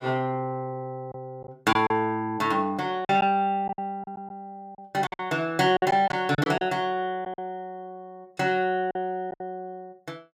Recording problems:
packet loss; 7% of the sound replaced, filled with silence

